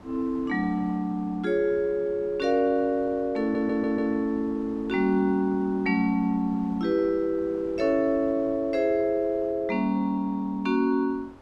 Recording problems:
wind on the microphone; below 840 Hz, SNR 23 dB
stutter; at 3.5 s

